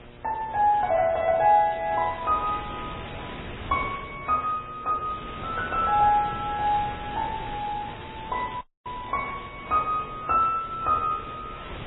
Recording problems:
lossy compression; AAC, then MP3, log-spectral distance 5 dB, nothing above 3.8 kHz
electrical hum; 60 Hz, harmonics up to 2.9 kHz, SNR 24 dB
wind noise; below 2.1 kHz, SNR 15 dB
crackling; from 1.5 to 3 s and from 6.5 to 9.5 s; loose cable, SNR 27 dB
audio cutting out; at 8.5 s

